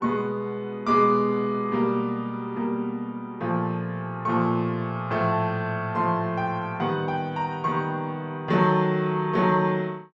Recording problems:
treble missing; nothing above 8 kHz

